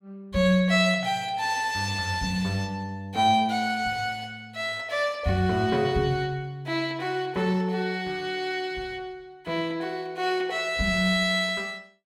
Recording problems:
none

